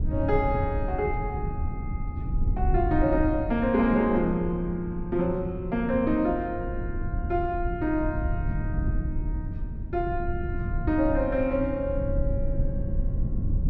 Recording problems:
rumble; below 110 Hz, SNR 4 dB

